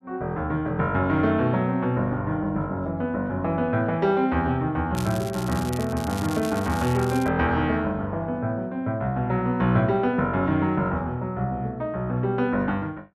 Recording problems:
crackle; from 5 to 7.5 s; loose cable, SNR 15 dB

